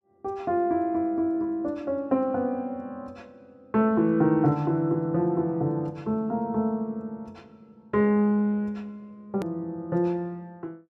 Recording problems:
click at an edit; at 9.5 s

